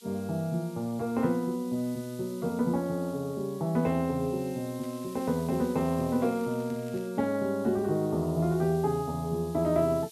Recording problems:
background hiss; SNR 21 dB
crackling; from 5 to 7 s; loose cable, SNR 27 dB

